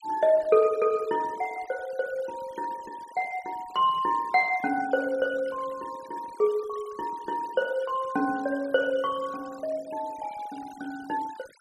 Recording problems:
noise reduction artefacts; signal-to-artefact ratio 21 dB

